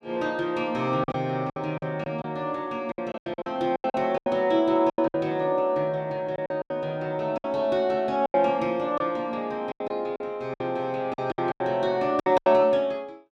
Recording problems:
packet loss; 12% of the sound replaced, filled with silence

